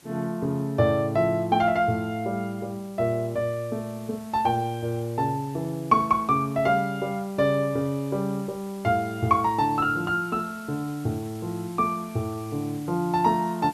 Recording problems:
hiss; slope -1 dB per octave, SNR 23 dB

